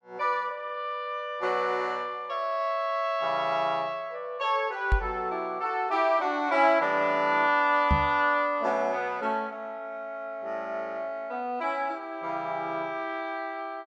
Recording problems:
microphone thump; at 5 s and at 8 s; peak +5 dB vs average level

